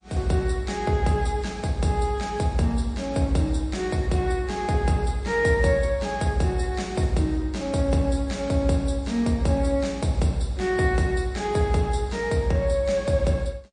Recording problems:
codec artefacts; MP3, log-spectral distance 2 dB, nothing above 9.5 kHz

